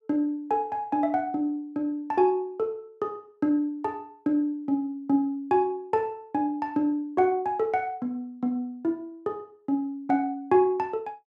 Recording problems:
none

